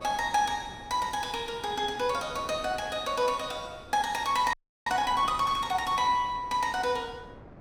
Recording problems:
wind noise; below 680 Hz, SNR 19 dB
audio freezing; at 4.5 s

